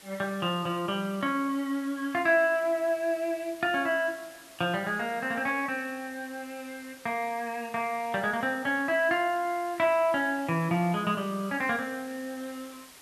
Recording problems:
background hiss; slope -1 dB per octave, SNR 21 dB

